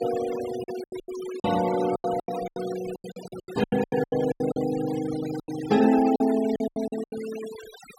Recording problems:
denoising artefacts; signal-to-artefact ratio 13 dB
packet loss; 19% of the sound replaced, filled with silence

